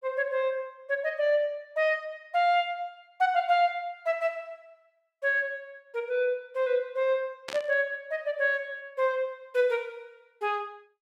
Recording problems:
static burst; at 7.5 s; peak -4 dB vs average level

